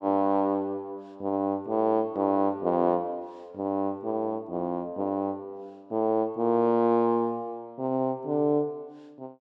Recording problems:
none

